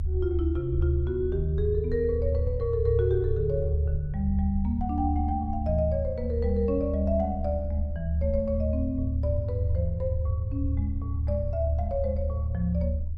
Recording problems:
rumble; below 78 Hz, strongest tone 76 Hz, SNR 1 dB

